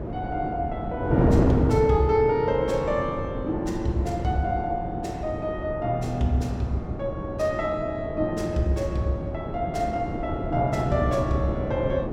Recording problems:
wind noise; below 410 Hz, SNR 4 dB

